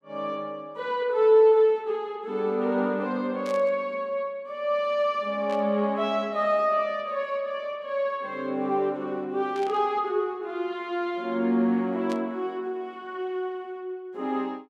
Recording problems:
static burst; 4 times, first at 3.5 s; peak -11 dB vs average level

